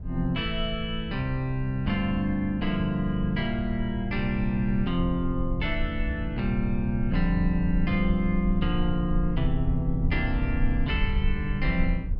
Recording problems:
low-frequency rumble; below 66 Hz, SNR 5 dB

